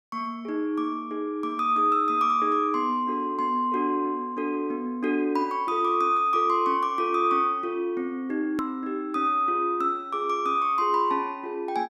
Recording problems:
edit click; at 8.5 s

